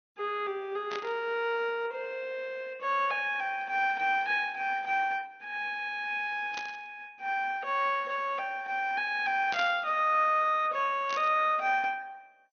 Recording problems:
lossy codec; MP2, log-spectral distance 3 dB, nothing above 6.2 kHz
static burst; 4 times, first at 1 s; peak -4 dB vs average level

